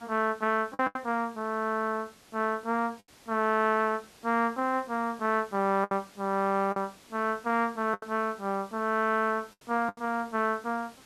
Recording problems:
hiss; slope -2 dB per octave, SNR 25 dB
lost packets; 4% of the sound replaced, filled with the last packet

